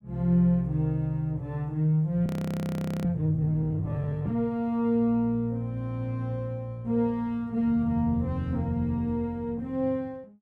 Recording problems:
audio freezing; at 2.5 s for 1 s

